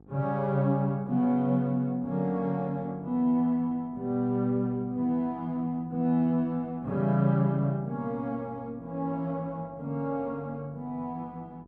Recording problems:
hum; 50 Hz, harmonics up to 900 Hz, SNR 26 dB

